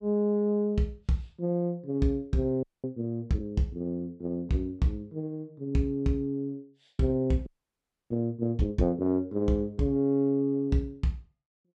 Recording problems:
frozen audio; at 2.5 s and at 7.5 s for 0.5 s

